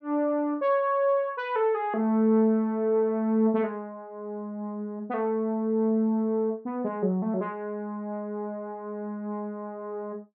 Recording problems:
none

